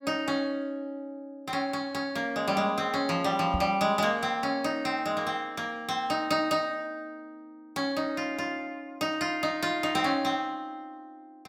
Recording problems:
microphone thump; at 3.5 s; peak +2 dB vs average level

